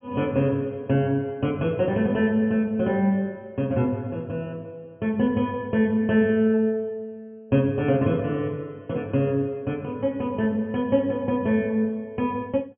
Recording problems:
treble missing; nothing above 3.3 kHz

